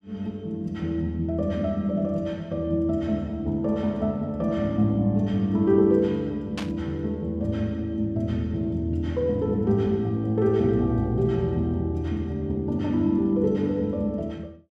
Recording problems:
burst of static; at 6.5 s; peak -4 dB vs average level

